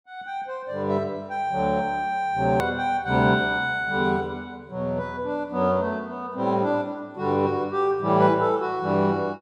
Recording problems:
click at an edit; at 2.5 s

